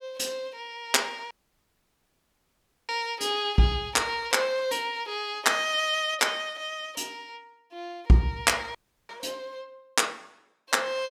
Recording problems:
dropout; at 1.5 s for 1.5 s and at 9 s

